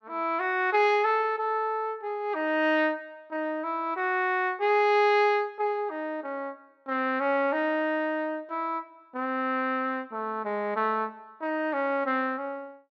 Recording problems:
none

